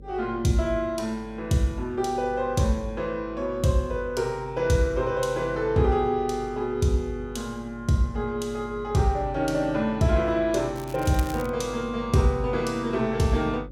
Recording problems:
electrical hum; 50 Hz, harmonics up to 550 Hz, SNR 18 dB
crackling; at 11 s; loose cable, SNR 18 dB

